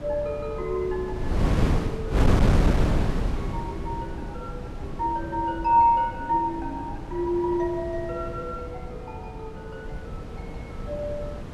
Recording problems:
hum; 60 Hz, harmonics up to 660 Hz, SNR 21 dB
wind noise; below 250 Hz, SNR 2 dB

